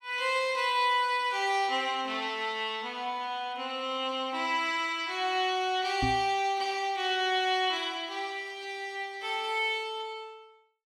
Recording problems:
microphone thump; at 6 s; peak +1 dB vs average level

